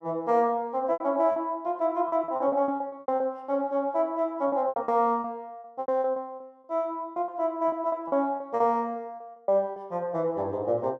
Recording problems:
packet loss; 13% of the sound replaced, filled with repeated pitch periods

